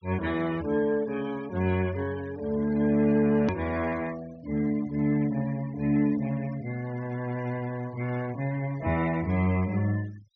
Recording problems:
treble missing; nothing above 6.3 kHz
noise reduction artefacts; signal-to-artefact ratio 20 dB
edit click; at 3.5 s

